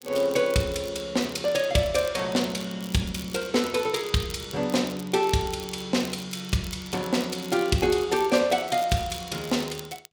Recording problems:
crackle; vinyl, SNR 18 dB

